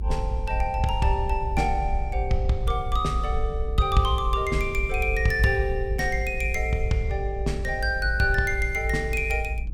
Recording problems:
rumble; below 60 Hz, strongest tone 54 Hz, SNR 4 dB

